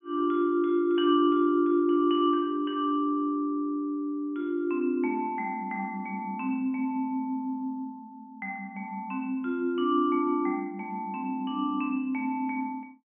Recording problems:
low-pass filter; nothing above 3.2 kHz

